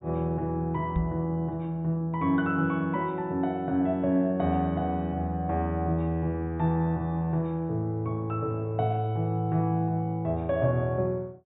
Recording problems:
treble cut off; nothing above 4 kHz
microphone bump; at 1 s; peak +1 dB vs average level

